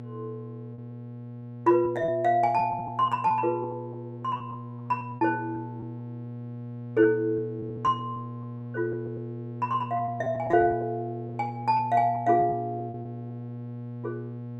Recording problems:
electrical hum; 60 Hz, harmonics up to 840 Hz, SNR 11 dB
lost packets; 8% of the sound replaced, filled with repeated pitch periods

